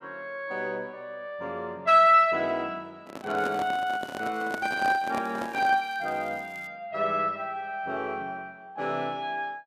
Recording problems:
handling noise; from 3 to 6 s; peak -4 dB vs average level
crackling; from 3.5 to 6.5 s; loose cable, SNR 28 dB

